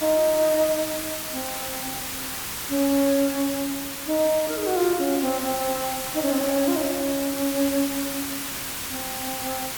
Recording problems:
background hiss; slope 0 dB per octave, SNR 4 dB
crackle; at 1 s and from 6 to 8 s; loose cable, SNR 22 dB

